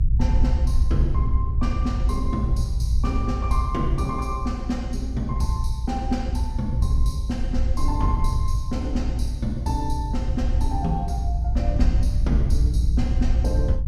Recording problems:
low-frequency rumble; below 70 Hz, SNR -4 dB

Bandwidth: 14.5 kHz